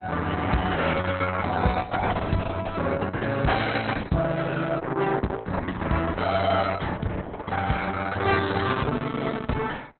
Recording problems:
lossy codec; Opus, log-spectral distance 5 dB, nothing above 4.1 kHz

